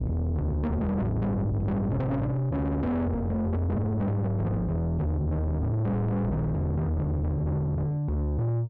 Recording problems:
distortion; soft clipping, signal-to-distortion ratio 7 dB

